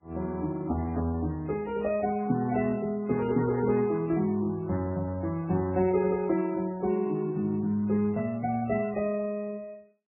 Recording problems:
codec artefacts; MP3, then Vorbis, log-spectral distance 2 dB, nothing above 2.5 kHz

